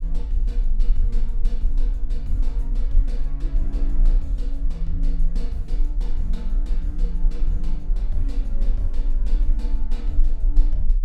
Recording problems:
rumble; below 36 Hz, strongest tone 22 Hz, SNR -11 dB

